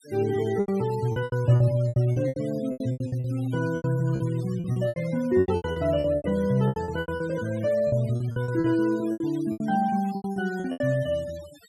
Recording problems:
noise reduction artefacts; signal-to-artefact ratio 20 dB
packet loss; 18% of the sound replaced, filled with repeated pitch periods

